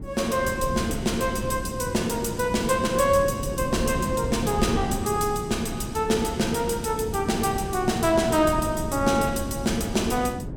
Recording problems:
wind on the microphone; below 270 Hz, SNR 8 dB

